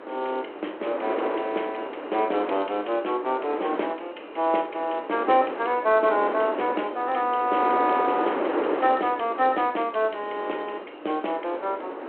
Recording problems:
phone line; 260 Hz to 3.3 kHz, G.726
wind on the microphone; below 940 Hz, SNR 7 dB

